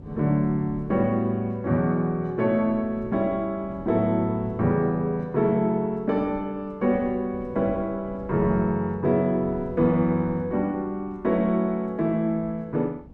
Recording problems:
wind on the microphone; below 270 Hz, SNR 19 dB

